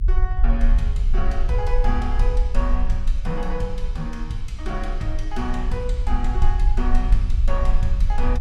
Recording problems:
low-frequency rumble; below 44 Hz, strongest tone 22 Hz, SNR -5 dB

